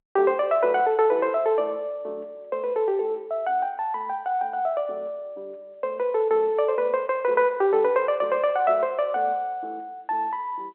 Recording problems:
telephone audio; 280 Hz to 3.3 kHz, G.711

